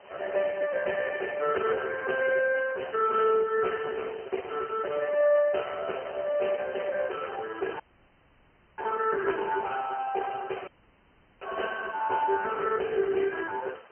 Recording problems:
telephone audio; 340 Hz to 2.9 kHz, AMR-NB
background hiss; SNR 31 dB
wind on the microphone; below 1.5 kHz, SNR 23 dB
dropout; at 8 s for 1 s and at 11 s for 0.5 s

